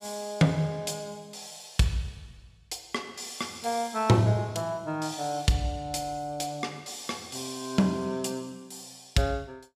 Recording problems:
none

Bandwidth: 15 kHz